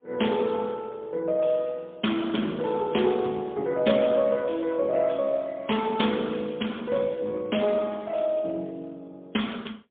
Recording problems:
telephone audio; 170 Hz to 3.5 kHz, AMR-NB, then MP3

